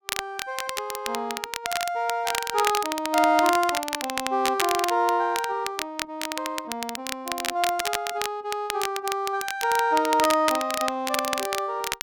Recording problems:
crackle; vinyl, SNR 5 dB

